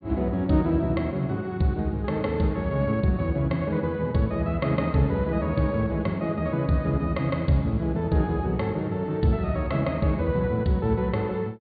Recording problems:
treble cut off; nothing above 4.6 kHz

